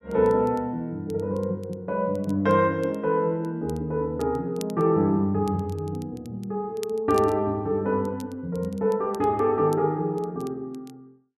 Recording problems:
crackle; vinyl, SNR 26 dB

